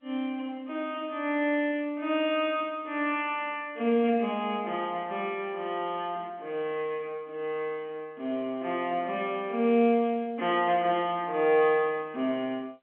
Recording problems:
phone line; 190 Hz to 3.4 kHz, G.711

